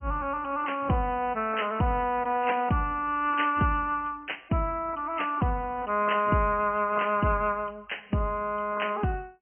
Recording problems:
treble cut off; nothing above 3 kHz
lossy compression; AAC, log-spectral distance 4 dB

